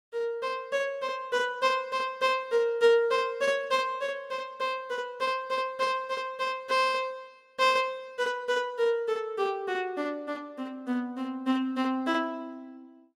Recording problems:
none

